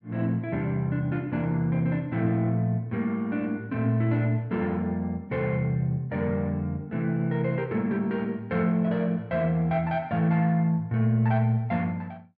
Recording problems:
none

